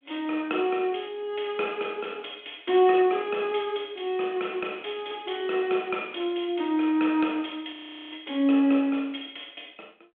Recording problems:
phone line; 220 Hz to 3.5 kHz, G.726
frozen audio; at 7.5 s

